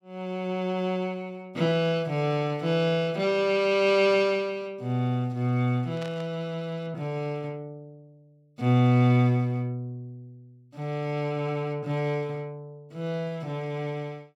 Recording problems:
static burst; at 6 s; peak -11 dB vs average level

